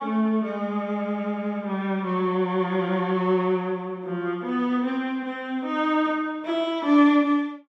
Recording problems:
none

